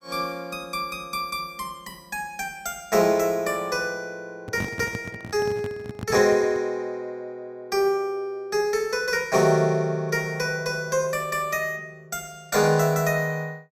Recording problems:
handling noise; from 4.5 to 6.5 s; peak -3 dB vs average level

